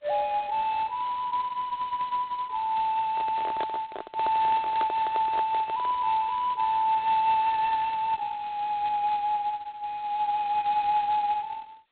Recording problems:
telephone audio; 990 Hz to 2.5 kHz, G.726
microphone handling noise; from 3 to 6 s; peak -5 dB vs average level

